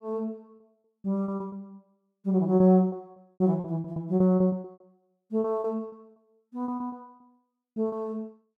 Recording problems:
lost packets; 16% of the sound replaced, filled with repeated pitch periods

